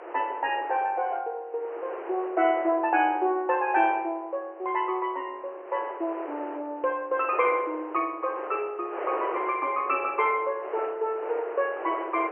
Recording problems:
telephone audio; 300 Hz to 3.1 kHz, G.726
wind noise; below 1.1 kHz, SNR 11 dB

